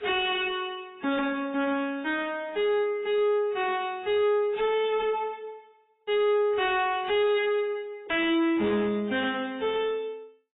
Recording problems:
lossy compression; AAC, log-spectral distance 2 dB
distortion; soft clipping, signal-to-distortion ratio 6 dB

